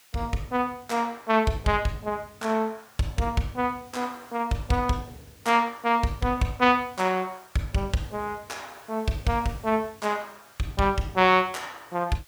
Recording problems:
background hiss; slope +1 dB per octave, SNR 26 dB

